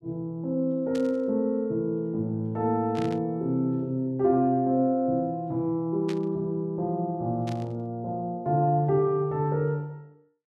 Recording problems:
burst of static; 4 times, first at 1 s; peak -9 dB vs average level

